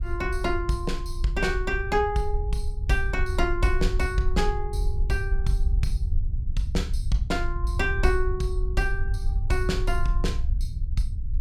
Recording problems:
low-frequency rumble; below 62 Hz, SNR 1 dB

